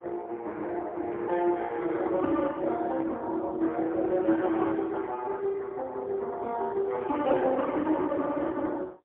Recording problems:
phone line; 240 Hz to 3.5 kHz, AMR-NB, then MP3

